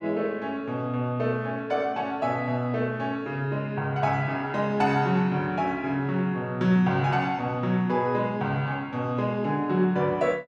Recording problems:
none

